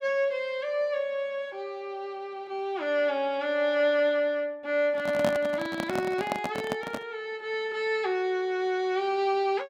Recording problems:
microphone handling noise; from 5 to 7 s; peak +3 dB vs average level

